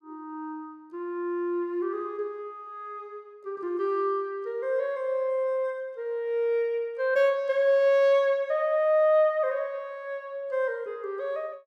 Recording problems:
none

